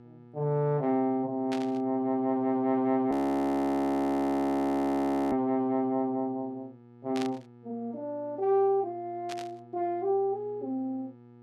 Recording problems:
hum; 60 Hz, harmonics up to 1.3 kHz, SNR 23 dB
burst of static; at 1.5 s, at 7 s and at 9.5 s; peak -6 dB vs average level
audio freezing; at 3 s for 2 s

